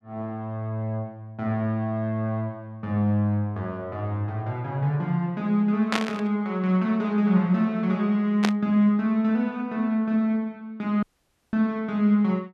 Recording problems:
burst of static; at 6 s and at 8.5 s; peak +3 dB vs average level
dropout; at 11 s for 0.5 s

